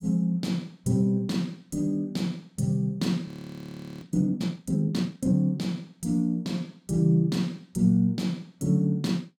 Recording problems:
audio freezing; at 3.5 s for 0.5 s

